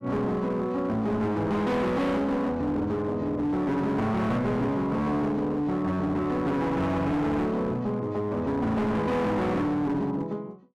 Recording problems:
distortion; hard clipping, uneven, signal-to-distortion ratio 7 dB

